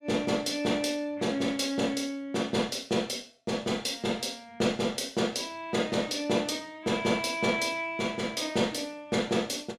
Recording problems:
none

